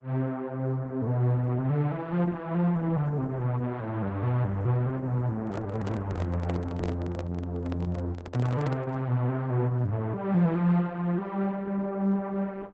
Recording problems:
lossy codec; Opus, log-spectral distance 2 dB
handling noise; from 5.5 to 9 s; peak -2 dB vs average level

